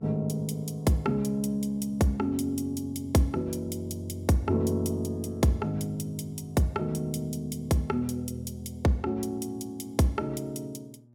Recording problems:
electrical hum; 60 Hz, harmonics up to 600 Hz, SNR 25 dB

